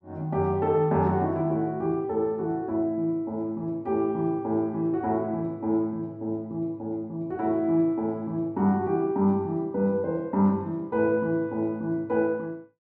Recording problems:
none

